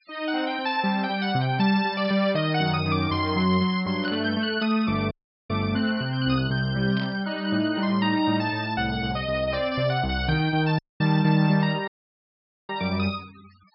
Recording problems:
low-pass filter; nothing above 5.3 kHz
noise reduction artefacts; signal-to-artefact ratio 24 dB
static burst; at 2 s, at 4 s and at 7 s; peak -12 dB vs average level
audio cutting out; at 5 s, at 11 s and at 12 s for 1 s

